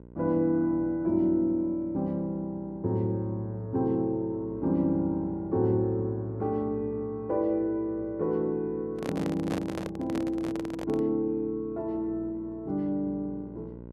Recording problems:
electrical hum; 60 Hz, harmonics up to 1 kHz, SNR 18 dB
handling noise; from 9 to 11 s; peak -1 dB vs average level

